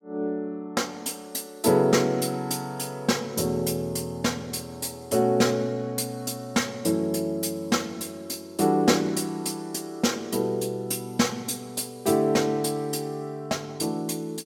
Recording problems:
none

